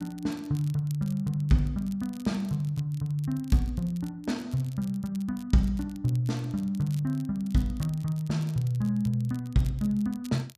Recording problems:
crackling; vinyl, SNR 24 dB

